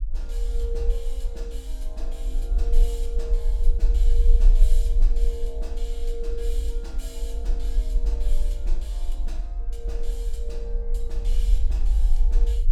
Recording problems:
low-frequency rumble; below 40 Hz, strongest tone 24 Hz, SNR -14 dB

